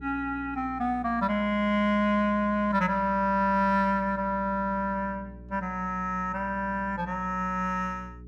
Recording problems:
electrical hum; 60 Hz, harmonics up to 420 Hz, SNR 18 dB

